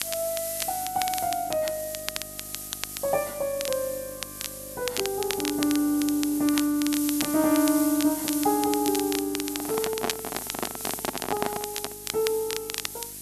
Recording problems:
electrical hum; 50 Hz, harmonics up to 1.1 kHz, SNR 22 dB
background hiss; slope +6 dB per octave, SNR 7 dB
crackling; vinyl, SNR 8 dB
microphone handling noise; from 9.5 to 12 s; peak +3 dB vs average level

